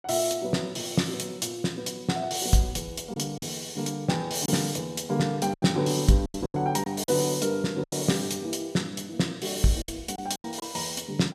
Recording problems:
packet loss; 6% of the sound replaced, filled with silence

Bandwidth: 14.5 kHz